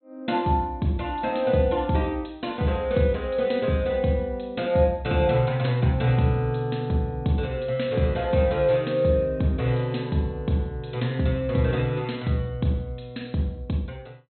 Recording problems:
low-pass filter; nothing above 4.2 kHz

